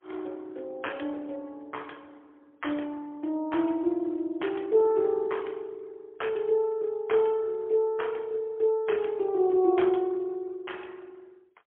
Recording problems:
telephone audio; 280 Hz to 3.3 kHz, AMR-NB, then MP3

